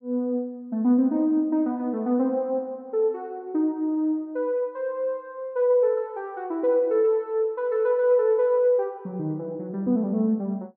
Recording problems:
none

